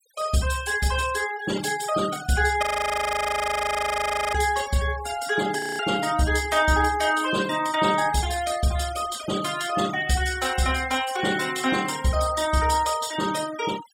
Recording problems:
noise reduction artefacts; signal-to-artefact ratio 13 dB
frozen audio; at 2.5 s for 1.5 s and at 5.5 s

